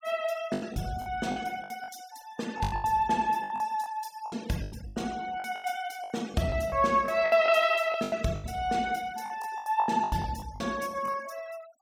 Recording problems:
denoising artefacts; signal-to-artefact ratio 20 dB
packet loss; 15% of the sound replaced, filled with the last packet

